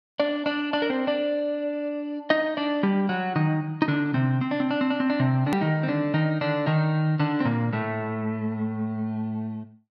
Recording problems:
click at an edit; at 5.5 s

